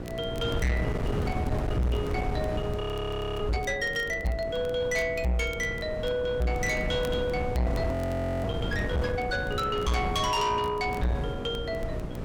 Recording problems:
distorted audio; soft clipping, signal-to-distortion ratio 8 dB
electrical hum; 60 Hz, harmonics up to 1.9 kHz, SNR 14 dB
wind on the microphone; below 330 Hz, SNR 5 dB
crackle; vinyl, SNR 25 dB
audio freezing; at 3 s for 0.5 s and at 8 s for 0.5 s

